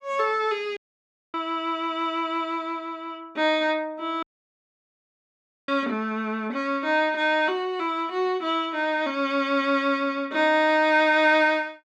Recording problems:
dropout; at 1 s for 0.5 s and at 4 s for 1.5 s

